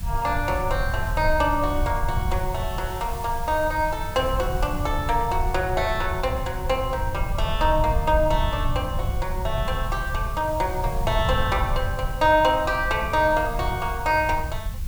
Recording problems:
hiss; slope 0 dB per octave, SNR 18 dB
rumble; below 94 Hz, SNR 6 dB

